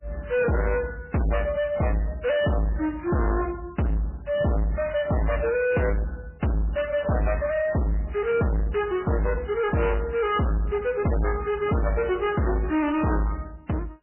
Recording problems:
codec artefacts; MP3, log-spectral distance 3 dB, nothing above 2.9 kHz
distortion; soft clipping, signal-to-distortion ratio 6 dB

